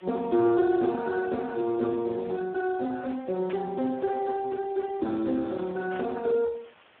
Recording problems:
phone line; 170 Hz to 2.1 kHz, Speex
background hiss; SNR 27 dB
static burst; at 3.5 s and at 6 s; peak -8 dB vs average level

